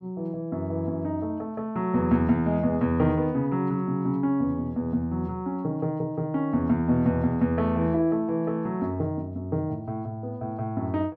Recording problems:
none

